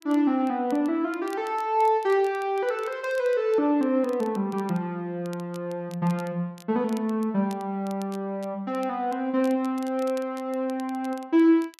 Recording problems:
crackle; vinyl, SNR 25 dB

